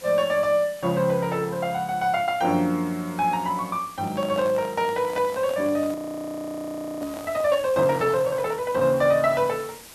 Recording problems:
hiss; slope -1 dB per octave, SNR 20 dB
microphone handling noise; from 4 to 8.5 s; peak -9 dB vs average level
audio freezing; at 6 s for 1 s

